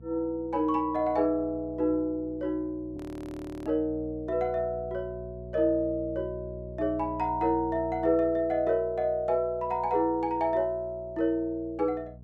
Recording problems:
hum; 60 Hz, harmonics up to 480 Hz, SNR 16 dB
frozen audio; at 3 s for 0.5 s

